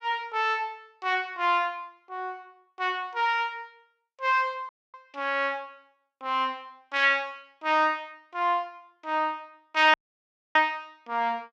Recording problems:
audio cutting out; at 4.5 s and at 10 s for 0.5 s

